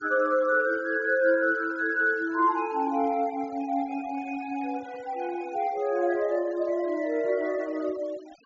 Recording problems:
treble missing; nothing above 7.4 kHz
denoising artefacts; signal-to-artefact ratio 24 dB

